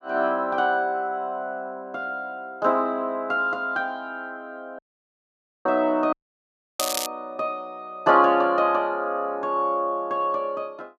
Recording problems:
audio cutting out; at 5 s for 1 s and at 6 s for 0.5 s
crackling; at 7 s; loose cable, SNR 5 dB

